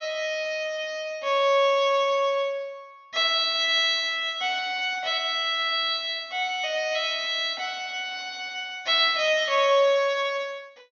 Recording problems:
low-pass filter; nothing above 6.7 kHz

